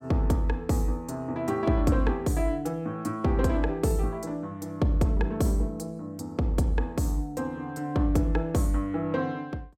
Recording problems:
none

